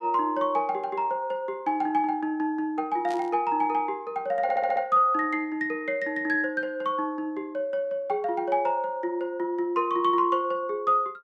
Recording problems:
static burst; at 3 s; peak -13 dB vs average level
audio stuttering; at 4.5 s

